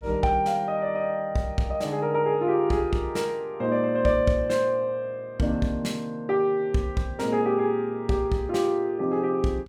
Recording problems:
none

